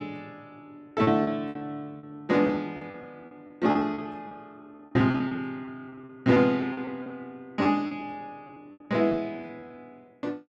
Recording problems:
packet loss; 14% of the sound replaced, filled with repeated pitch periods

